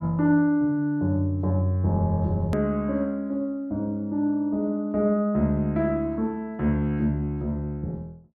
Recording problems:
click at an edit; at 2.5 s

